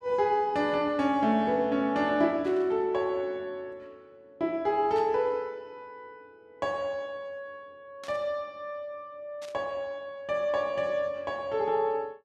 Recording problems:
burst of static; 4 times, first at 2.5 s; peak -13 dB vs average level

